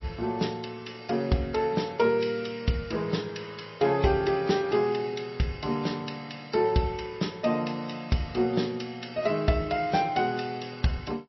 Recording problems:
lossy codec; MP3, log-spectral distance 4 dB, nothing above 5.7 kHz

